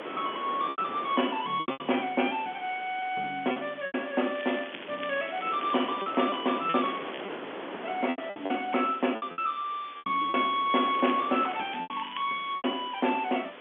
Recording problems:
telephone audio; 280 Hz to 3.4 kHz, G.711
background hiss; SNR 19 dB
wind noise; below 1.4 kHz, SNR 12 dB
packet loss; 9% of the sound replaced, filled with repeated pitch periods
crackle; from 4.5 to 7.5 s and from 11 to 12 s; loose cable, SNR 15 dB

